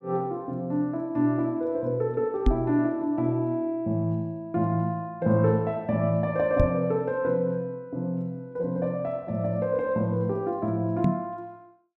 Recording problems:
microphone bump; at 2.5 s, at 6.5 s and at 11 s; peak +7 dB vs average level

